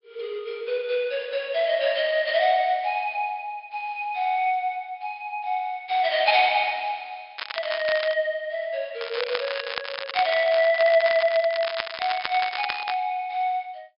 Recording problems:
low-pass filter; nothing above 5.5 kHz
crackle; at 7.5 s and from 9 to 13 s; loose cable, SNR 8 dB

